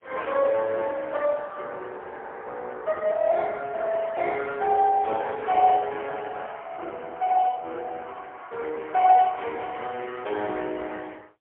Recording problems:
phone line; 320 Hz to 3.6 kHz, AMR-NB, then MP3

